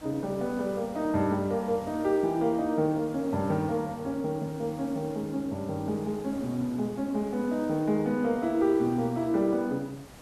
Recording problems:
background hiss; slope -4 dB per octave, SNR 20 dB

